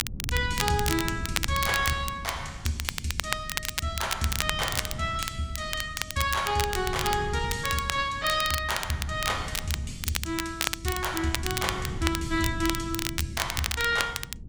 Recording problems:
wind on the microphone; below 160 Hz, SNR 9 dB
crackling; vinyl, SNR 3 dB

